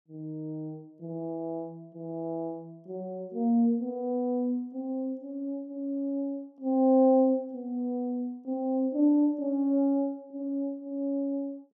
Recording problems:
none

